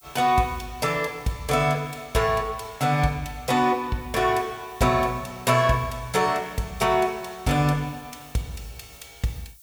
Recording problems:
background hiss; SNR 26 dB

